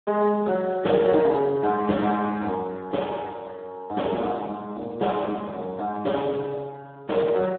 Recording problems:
phone line; 220 Hz to 3.7 kHz, Speex

